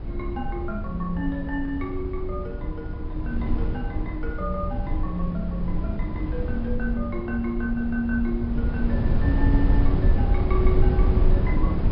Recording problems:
treble cut off; nothing above 5.5 kHz
wind on the microphone; below 96 Hz, SNR -4 dB

